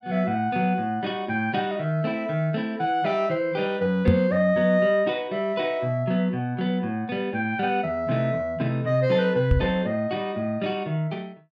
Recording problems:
microphone bump; at 4 s and at 9.5 s; peak +8 dB vs average level

